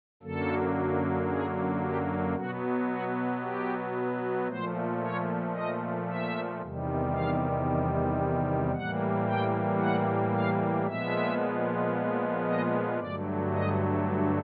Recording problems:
treble cut off; nothing above 4.5 kHz

